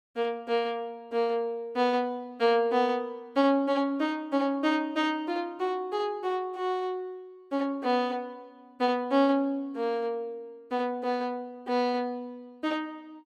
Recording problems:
none

